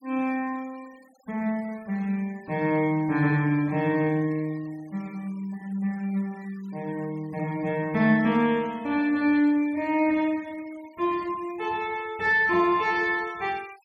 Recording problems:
denoising artefacts; signal-to-artefact ratio 26 dB

